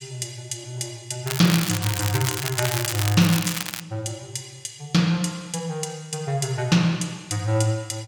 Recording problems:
crackling; from 1.5 to 4 s; loose cable, SNR 4 dB

